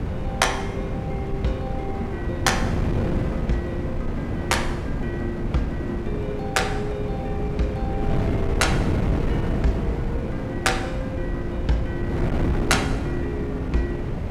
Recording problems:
wind on the microphone; below 280 Hz, SNR -1 dB

